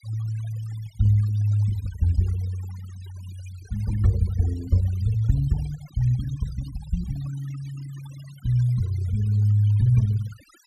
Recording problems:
denoising artefacts; signal-to-artefact ratio 21 dB

